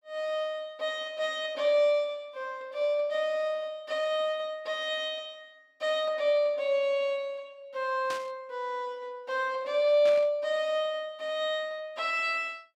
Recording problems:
static burst; at 8 s and at 10 s; peak -6 dB vs average level

